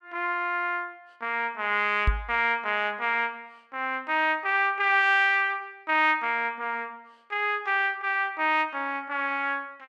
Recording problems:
microphone bump; at 2 s; peak +4 dB vs average level

